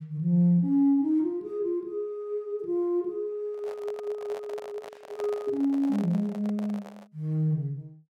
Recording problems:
handling noise; from 3.5 to 7 s; peak -8 dB vs average level

